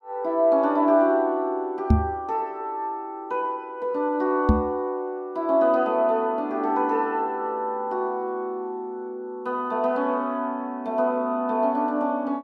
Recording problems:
microphone bump; at 2 s and at 4.5 s; peak +9 dB vs average level

